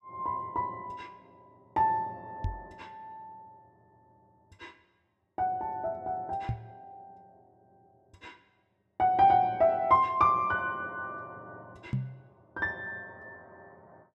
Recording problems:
microphone thump; at 2.5 s, at 6.5 s and at 12 s; peak +1 dB vs average level

